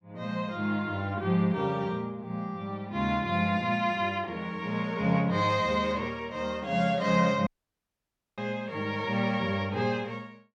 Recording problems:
audio cutting out; at 7.5 s for 1 s

